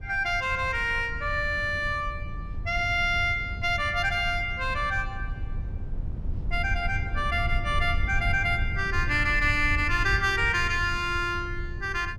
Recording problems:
low-frequency rumble; below 94 Hz, SNR 8 dB

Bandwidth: 14.5 kHz